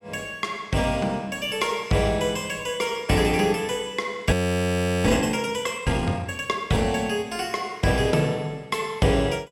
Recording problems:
audio freezing; at 4.5 s for 0.5 s

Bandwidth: 16 kHz